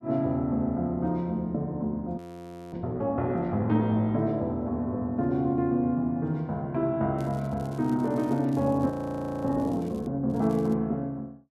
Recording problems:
frozen audio; at 2 s for 0.5 s and at 9 s for 0.5 s
crackle; from 7 to 10 s and at 10 s; loose cable, SNR 28 dB

